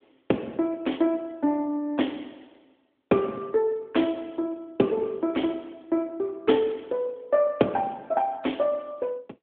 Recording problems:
telephone audio; 170 Hz to 3.5 kHz, AMR-NB

